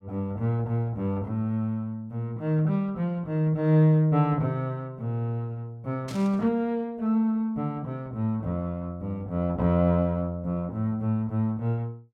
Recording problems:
static burst; at 6 s; peak -11 dB vs average level

